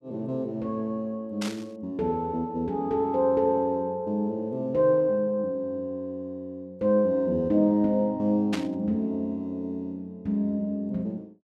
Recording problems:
burst of static; at 1.5 s and at 8.5 s; peak -2 dB vs average level

